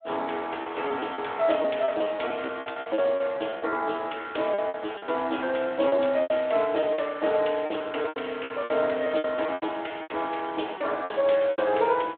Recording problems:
phone line; 280 Hz to 3.5 kHz, Speex
lost packets; 16% of the sound replaced, filled with repeated pitch periods

